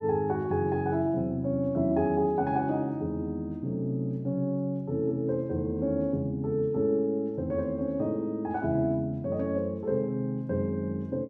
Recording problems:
none

